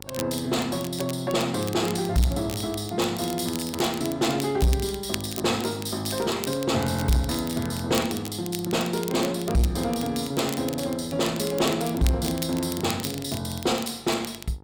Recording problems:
distorted audio; soft clipping, signal-to-distortion ratio 11 dB
hum; 50 Hz, harmonics up to 1.4 kHz, SNR 24 dB
crackle; vinyl, SNR 12 dB

